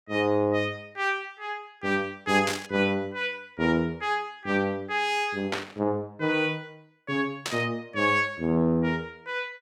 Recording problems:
static burst; at 2.5 s, at 5.5 s and at 7.5 s; peak +2 dB vs average level

